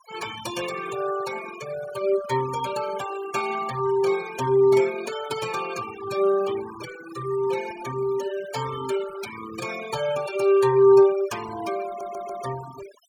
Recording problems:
noise reduction artefacts; signal-to-artefact ratio 14 dB
audio stuttering; at 12 s

